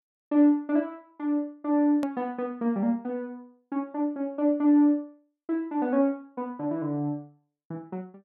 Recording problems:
edit click; at 2 s

